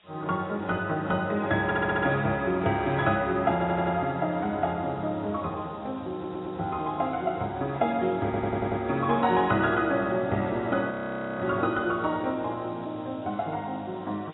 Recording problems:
codec artefacts; AAC, log-spectral distance 9 dB, nothing above 3.2 kHz
background hiss; SNR 27 dB
stutter; 4 times, first at 1.5 s
frozen audio; at 11 s for 0.5 s

